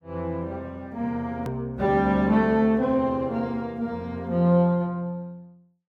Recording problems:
click at an edit; at 1.5 s

